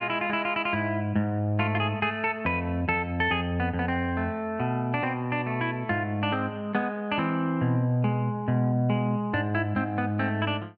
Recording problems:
none

